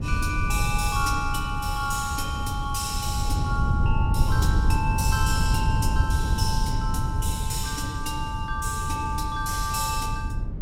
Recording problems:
wind on the microphone; below 110 Hz, SNR -1 dB

